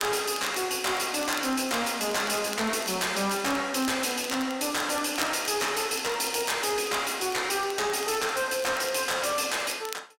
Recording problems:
distorted audio; soft clipping, signal-to-distortion ratio 10 dB
crackle; vinyl, SNR 16 dB

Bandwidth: 16 kHz